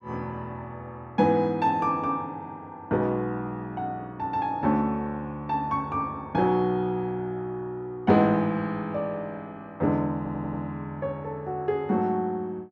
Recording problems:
audio stuttering; at 10 s

